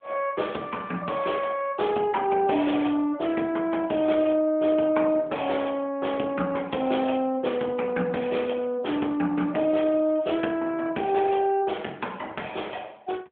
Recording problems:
telephone audio; 220 Hz to 3.4 kHz, AMR-NB

